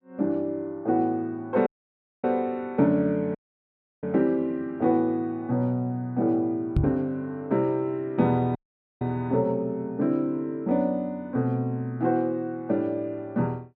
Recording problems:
dropout; at 1.5 s for 0.5 s, at 3.5 s for 0.5 s and at 8.5 s
microphone thump; at 7 s; peak +6 dB vs average level

